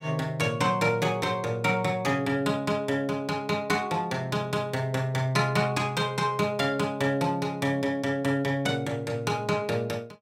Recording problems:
none

